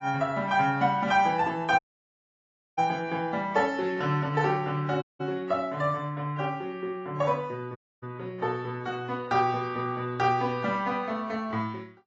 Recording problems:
codec artefacts; AAC, log-spectral distance 2 dB, nothing above 6.5 kHz
audio cutting out; at 2 s for 1 s, at 5 s and at 8 s

